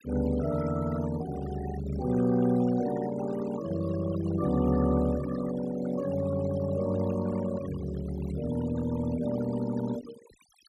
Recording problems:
denoising artefacts; signal-to-artefact ratio 14 dB

